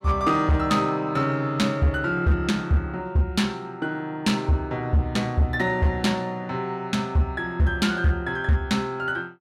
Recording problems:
distortion; hard clipping, signal-to-distortion ratio 12 dB

